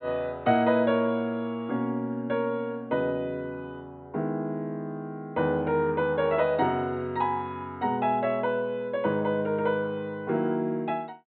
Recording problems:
treble cut off; nothing above 4 kHz

